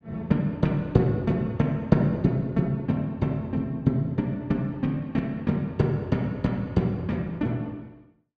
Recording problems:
none

